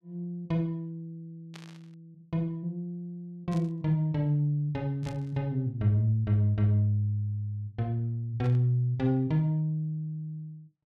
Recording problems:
burst of static; 4 times, first at 1.5 s; peak -13 dB vs average level

